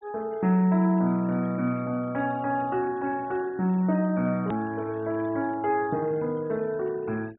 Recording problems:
low-pass filter; nothing above 4 kHz
denoising artefacts; signal-to-artefact ratio 27 dB
edit click; at 4.5 s

